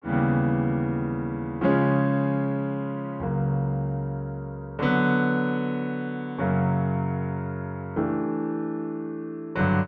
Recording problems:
none

